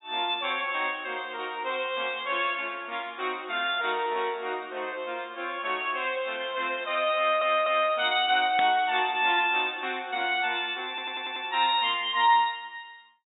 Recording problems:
treble missing; nothing above 4 kHz
audio stuttering; at 7 s and at 11 s
static burst; at 8.5 s; peak -1 dB vs average level

